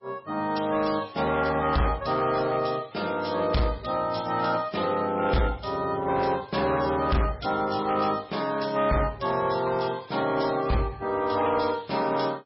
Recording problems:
lossy codec; MP3, log-spectral distance 6 dB, nothing above 5.5 kHz
distorted audio; hard clipping, signal-to-distortion ratio 11 dB

